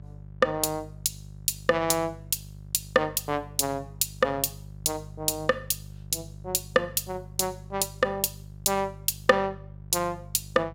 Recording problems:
hum; 50 Hz, harmonics up to 550 Hz, SNR 17 dB

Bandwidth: 16.5 kHz